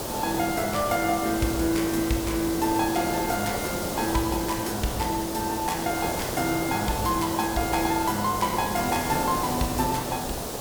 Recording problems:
background hiss; SNR 4 dB

